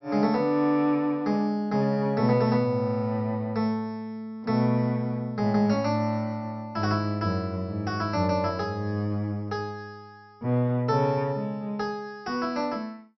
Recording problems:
treble missing; nothing above 5.8 kHz

